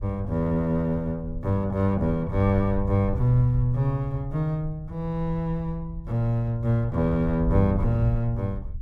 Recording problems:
rumble; below 78 Hz, SNR 10 dB

